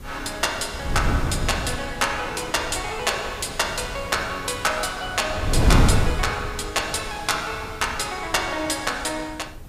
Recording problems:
background hiss; slope -1 dB per octave, SNR 27 dB
wind noise; below 190 Hz, SNR 1 dB

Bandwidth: 15 kHz